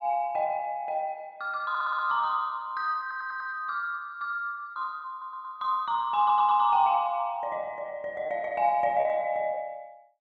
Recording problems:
lost packets; 1.9% of the sound replaced, filled with repeated pitch periods
stutter; 4 times, first at 1.5 s

